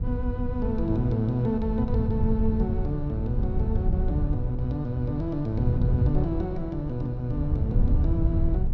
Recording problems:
wind noise; below 110 Hz, SNR 0 dB

